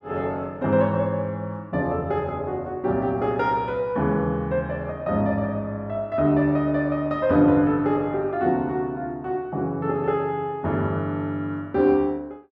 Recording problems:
none

